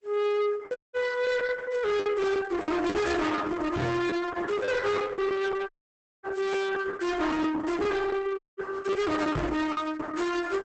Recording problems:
lossy compression; Opus, log-spectral distance 3 dB, nothing above 8 kHz
distortion; soft clipping, signal-to-distortion ratio 7 dB
packet loss; 10% of the sound replaced, filled with the last packet
dropout; at 1 s, at 5.5 s for 0.5 s and at 8.5 s
microphone bump; at 4 s and at 9.5 s; peak +4 dB vs average level

